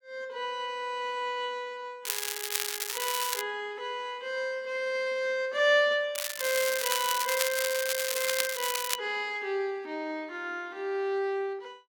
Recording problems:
crackle; from 2 to 3.5 s and from 6 to 9 s; loose cable, SNR 1 dB

